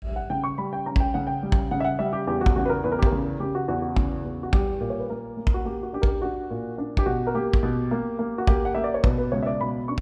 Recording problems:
none

